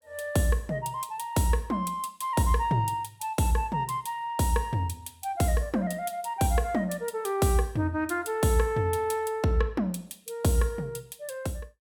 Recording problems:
none

